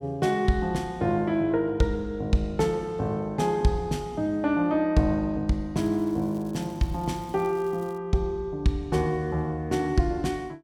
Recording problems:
crackling; from 6 to 8 s; loose cable, SNR 28 dB

